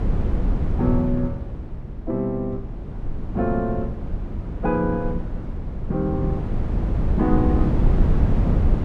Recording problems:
wind on the microphone; below 140 Hz, SNR 0 dB

